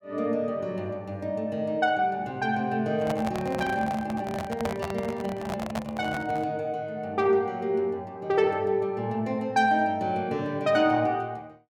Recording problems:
microphone handling noise; from 3 to 6.5 s; peak -1 dB vs average level

